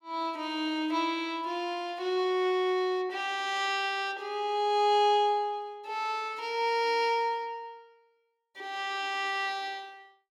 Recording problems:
none

